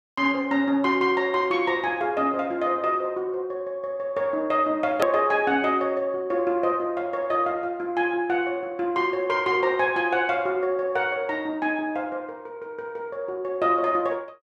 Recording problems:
hard cut with a click; at 5 s

